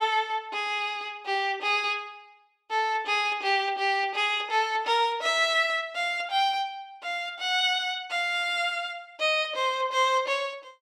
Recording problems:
none

